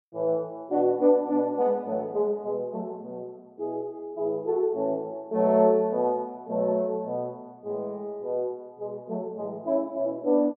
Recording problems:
none

